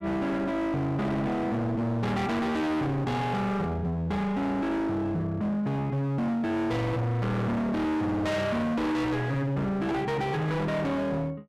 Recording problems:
distorted audio; hard clipping, signal-to-distortion ratio 6 dB

